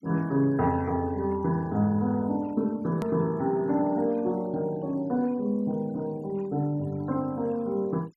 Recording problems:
denoising artefacts; signal-to-artefact ratio 27 dB
edit click; at 3 s

